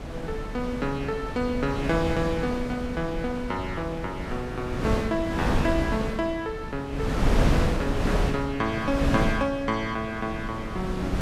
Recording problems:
wind on the microphone; below 410 Hz, SNR 1 dB

